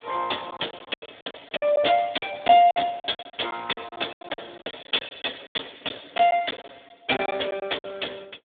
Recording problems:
telephone audio; 240 Hz to 3.6 kHz, Speex
lost packets; 16% of the sound replaced, filled with silence

